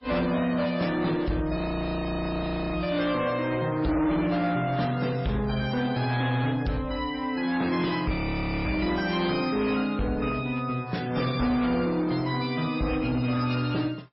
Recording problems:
lossy compression; MP3, then AAC, log-spectral distance 4 dB, nothing above 5.2 kHz
distorted audio; hard clipping, signal-to-distortion ratio 10 dB
audio freezing; at 1.5 s for 1 s and at 8 s for 0.5 s

